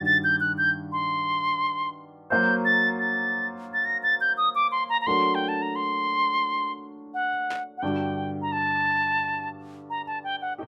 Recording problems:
burst of static; at 7.5 s; peak -9 dB vs average level

